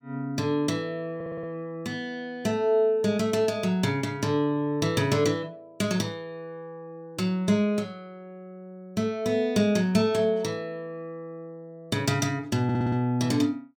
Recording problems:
stutter; at 1 s and at 13 s

